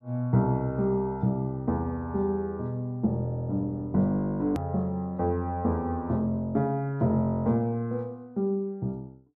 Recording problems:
hard cut with a click; at 4.5 s

